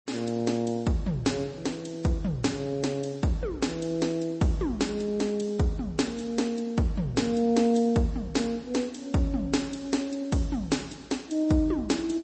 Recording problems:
codec artefacts; MP3, then MP3, log-spectral distance 3 dB, nothing above 8.2 kHz

